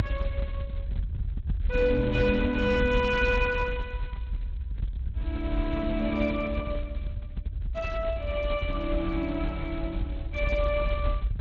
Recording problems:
lossy codec; Speex, log-spectral distance 2 dB
rumble; below 78 Hz, SNR 5 dB

